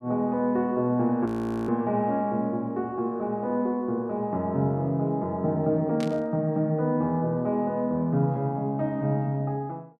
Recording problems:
frozen audio; at 1.5 s
burst of static; at 6 s; peak -9 dB vs average level

